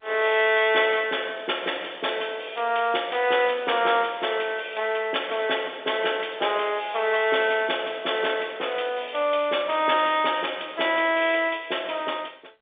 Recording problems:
telephone audio; 340 Hz to 3.6 kHz, G.711

